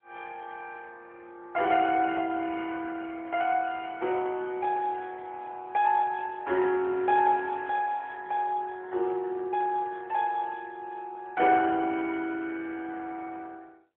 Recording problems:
phone line; 280 Hz to 3.3 kHz, AMR-NB

